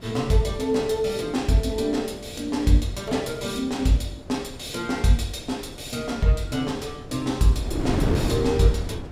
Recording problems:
wind noise; below 340 Hz, SNR 9 dB

